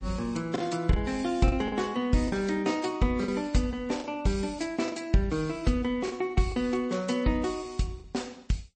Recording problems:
codec artefacts; MP3, log-spectral distance 3 dB, nothing above 8.2 kHz
lost packets; 5% of the sound replaced, filled with the last packet

